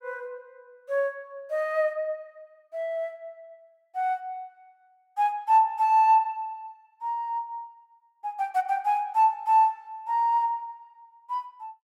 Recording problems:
none

